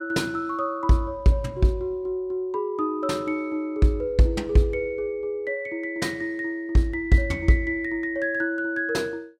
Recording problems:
none

